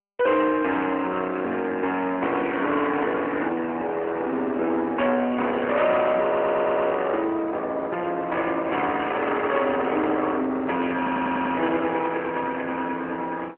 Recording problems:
telephone audio; 240 Hz to 3.1 kHz, AMR-NB
distorted audio; soft clipping, signal-to-distortion ratio 9 dB
stutter; at 6 s and at 11 s

